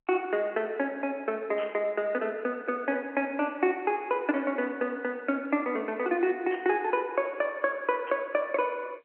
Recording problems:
telephone audio; 260 Hz to 3.3 kHz, G.711
burst of static; at 1.5 s, at 6.5 s and at 8 s; peak -10 dB vs average level

